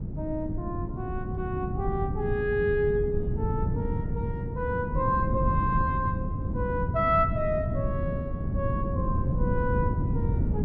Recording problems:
wind noise; below 180 Hz, SNR 0 dB

